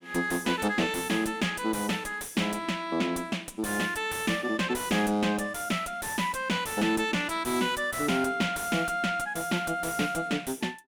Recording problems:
distorted audio; soft clipping, signal-to-distortion ratio 11 dB

